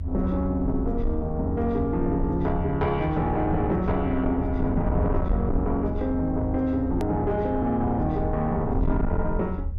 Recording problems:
distorted audio; soft clipping, signal-to-distortion ratio 11 dB
low-frequency rumble; below 80 Hz, SNR 5 dB
hard cut with a click; at 7 s

